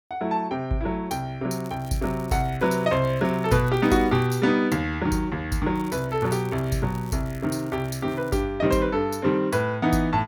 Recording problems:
crackling; from 1.5 to 4.5 s and from 6 to 8.5 s; loose cable, SNR 25 dB

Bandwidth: 18.5 kHz